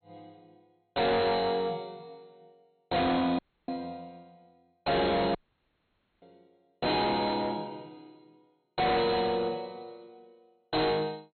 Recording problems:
low-pass filter; nothing above 4.3 kHz
distortion; soft clipping, signal-to-distortion ratio 6 dB
dropout; at 3.5 s and at 5.5 s for 1 s

